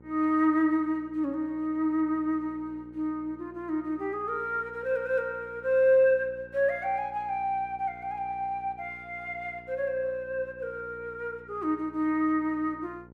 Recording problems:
electrical hum; 60 Hz, harmonics up to 1.4 kHz, SNR 23 dB

